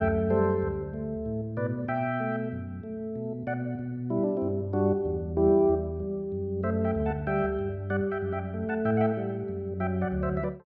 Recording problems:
none

